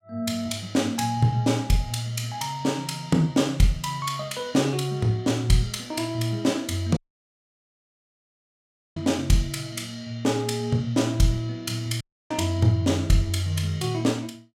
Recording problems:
dropout; at 7 s for 2 s and at 12 s

